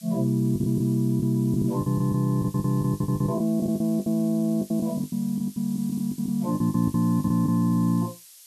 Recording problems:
background hiss; slope +6 dB per octave, SNR 21 dB
packet loss; 16% of the sound replaced, filled with the last packet

